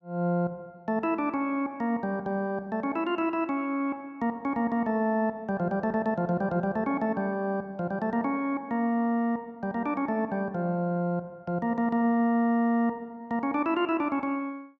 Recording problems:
none

